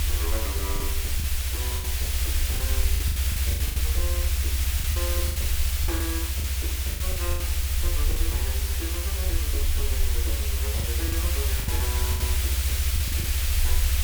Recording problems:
background hiss; SNR -10 dB
rumble; below 76 Hz, SNR -12 dB
lost packets; 10% of the sound replaced, filled with the last packet

